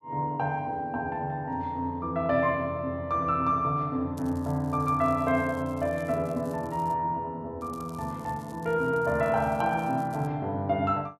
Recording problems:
crackle; from 4 to 7 s and from 7.5 to 10 s; loose cable, SNR 27 dB

